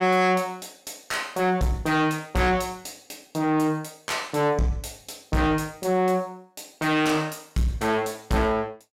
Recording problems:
distortion; soft clipping, signal-to-distortion ratio 6 dB

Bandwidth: 16 kHz